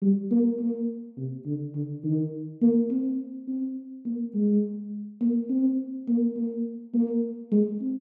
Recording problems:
none

